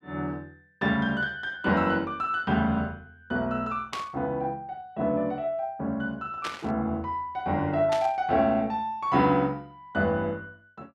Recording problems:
burst of static; at 4 s, at 6.5 s and at 8 s; peak -2 dB vs average level

